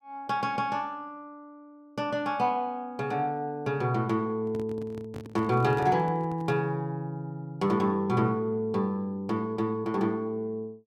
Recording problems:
handling noise; from 4.5 to 6.5 s; peak -7 dB vs average level

